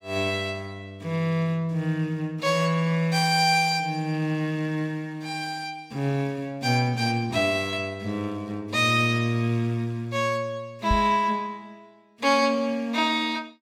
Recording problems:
microphone bump; at 11 s; peak +2 dB vs average level

